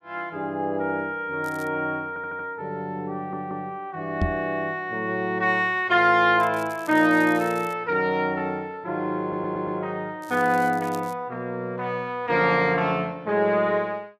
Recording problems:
crackle; at 1.5 s, from 6.5 to 7.5 s and at 10 s; loose cable, SNR 23 dB
stutter; at 2 s, at 3 s and at 9 s
microphone bump; at 4 s; peak +3 dB vs average level

